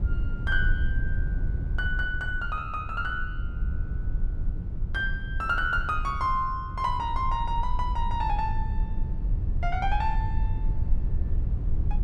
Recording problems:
rumble; below 72 Hz, SNR 1 dB

